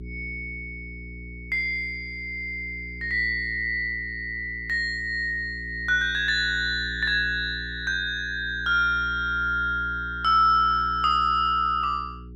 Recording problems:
hum; 60 Hz, harmonics up to 420 Hz, SNR 16 dB

